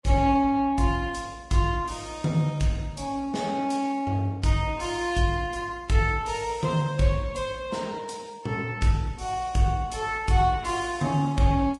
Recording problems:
lossy compression; Vorbis, log-spectral distance 3 dB, nothing above 10.4 kHz

